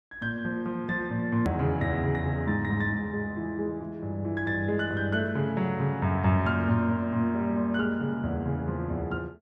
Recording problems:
hard cut with a click; at 1.5 s

